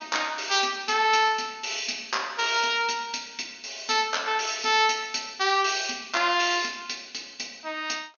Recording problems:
low-pass filter; nothing above 6.7 kHz

